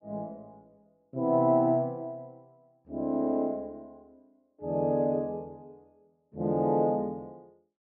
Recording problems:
none

